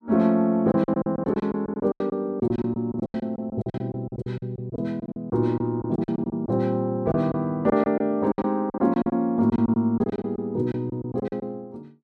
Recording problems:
packet loss; 16% of the sound replaced, filled with silence

